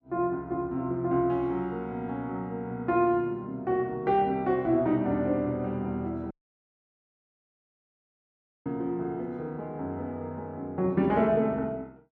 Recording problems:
dropout; at 6.5 s for 2.5 s

